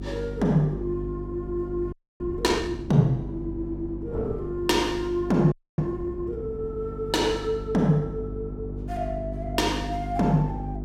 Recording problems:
mains hum; 50 Hz, harmonics up to 400 Hz, SNR 9 dB
wind on the microphone; below 380 Hz, SNR 17 dB
frozen audio; at 2 s and at 5.5 s

